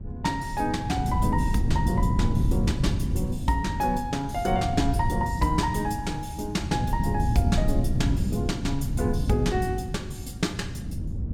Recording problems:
wind noise; below 160 Hz, SNR 0 dB

